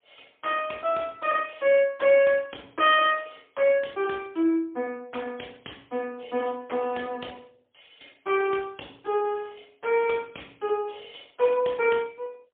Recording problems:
phone line; 220 Hz to 3.6 kHz, AMR-NB, then MP3

